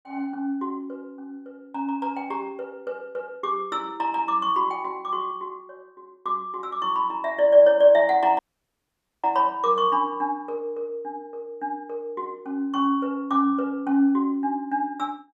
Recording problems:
dropout; at 8.5 s for 1 s

